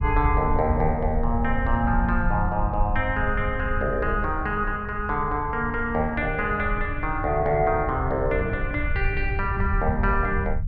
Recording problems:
rumble; below 82 Hz, SNR 5 dB

